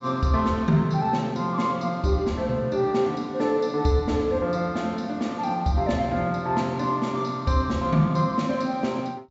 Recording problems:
treble missing; nothing above 8 kHz

